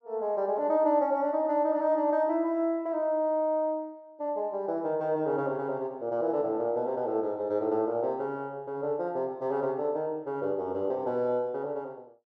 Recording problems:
none

